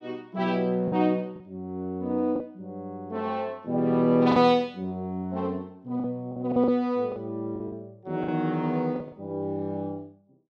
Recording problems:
packet loss; 6% of the sound replaced, filled with the last packet

